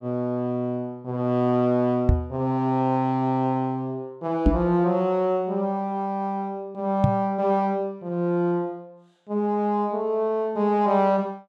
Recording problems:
microphone thump; at 2 s, at 4.5 s and at 7 s; peak +9 dB vs average level

